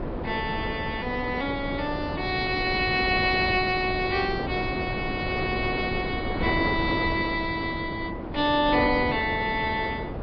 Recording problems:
treble cut off; nothing above 5.5 kHz
lossy codec; MP3, log-spectral distance 2 dB
wind noise; below 560 Hz, SNR 6 dB

